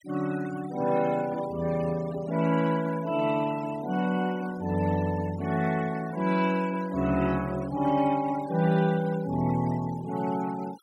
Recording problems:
noise reduction artefacts; signal-to-artefact ratio 17 dB

